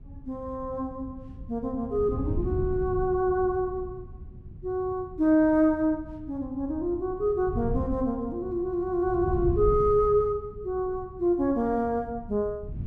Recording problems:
wind on the microphone; below 130 Hz, SNR 11 dB

